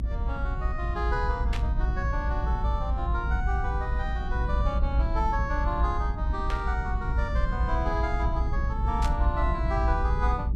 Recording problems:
rumble; below 62 Hz, SNR -3 dB
static burst; at 1.5 s, at 6.5 s and at 9 s; peak 0 dB vs average level

